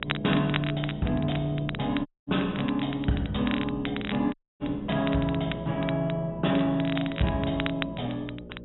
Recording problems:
low-pass filter; nothing above 3.9 kHz
hum; 60 Hz, harmonics up to 600 Hz, SNR 15 dB
wind on the microphone; below 270 Hz, SNR 21 dB
crackle; vinyl, SNR 10 dB
dropout; at 2 s and at 4.5 s

